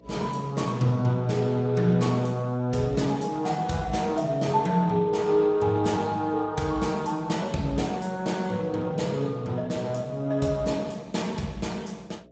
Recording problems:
lossy compression; Speex, log-spectral distance 4 dB, nothing above 7.8 kHz
electrical hum; 60 Hz, harmonics up to 660 Hz, SNR 27 dB

